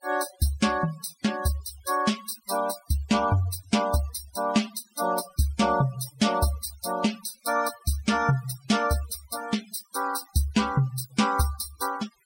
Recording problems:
denoising artefacts; signal-to-artefact ratio 14 dB

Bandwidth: 16 kHz